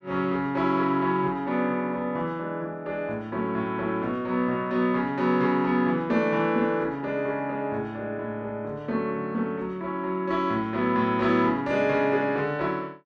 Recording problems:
none

